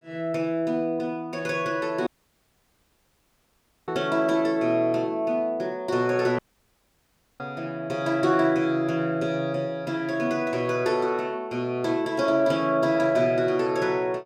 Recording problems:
audio cutting out; at 2 s for 2 s and at 6.5 s for 1 s

